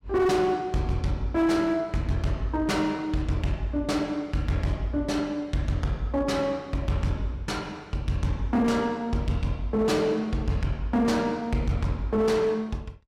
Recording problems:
distortion; hard clipping, signal-to-distortion ratio 12 dB

